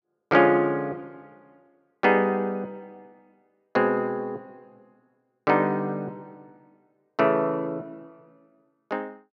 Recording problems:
none

